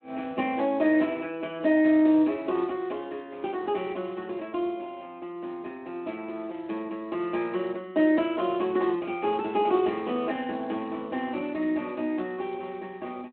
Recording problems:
telephone audio; 220 Hz to 3.5 kHz, Speex

